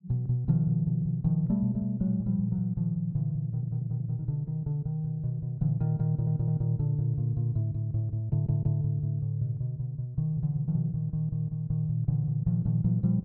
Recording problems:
audio stuttering; at 3.5 s, at 6 s and at 8.5 s

